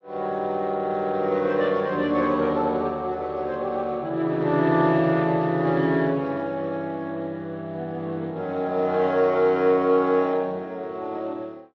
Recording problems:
lossy codec; Speex, log-spectral distance 2 dB

